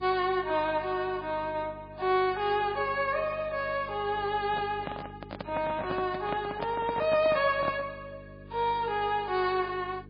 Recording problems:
lossy compression; MP3, log-spectral distance 3 dB, nothing above 4.5 kHz
hum; 50 Hz, harmonics up to 450 Hz, SNR 19 dB
handling noise; from 4.5 to 8 s; peak -1 dB vs average level

